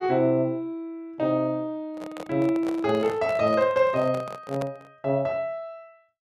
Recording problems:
microphone handling noise; from 2 to 5 s; peak -5 dB vs average level

